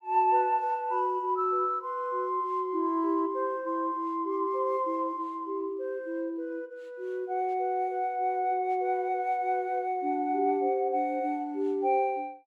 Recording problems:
none

